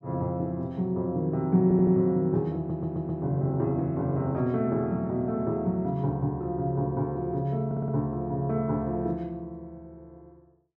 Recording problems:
audio stuttering; at 1.5 s, at 2.5 s and at 7.5 s

